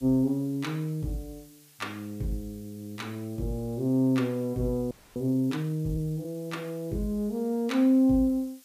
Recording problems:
background hiss; slope +3 dB per octave, SNR 26 dB
frozen audio; at 5 s

